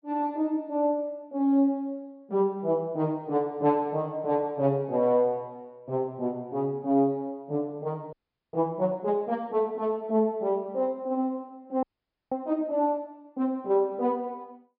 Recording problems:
treble missing; nothing above 5.5 kHz
frozen audio; at 8 s and at 12 s

